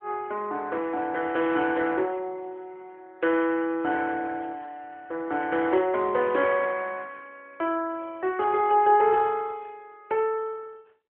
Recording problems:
phone line; 280 Hz to 3 kHz, AMR-NB

